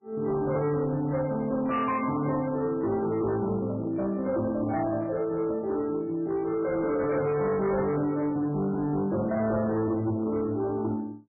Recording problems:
codec artefacts; MP3, log-spectral distance 2 dB, nothing above 2.9 kHz
distortion; hard clipping, signal-to-distortion ratio 11 dB

